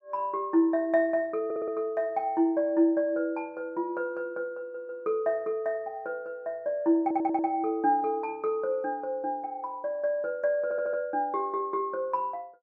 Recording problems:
audio stuttering; 4 times, first at 1.5 s

